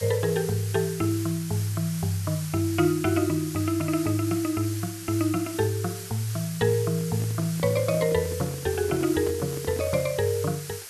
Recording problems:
background hiss; slope +2 dB per octave, SNR 11 dB
microphone handling noise; from 7 to 10 s; peak -5 dB vs average level

